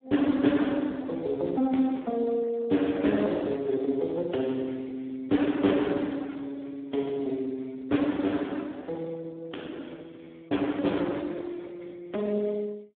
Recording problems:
phone line; 190 Hz to 3.5 kHz, Speex

